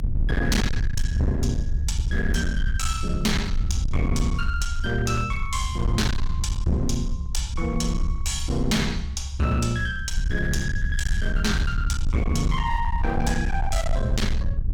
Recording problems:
distortion; hard clipping, uneven, signal-to-distortion ratio 8 dB
rumble; below 74 Hz, SNR 1 dB

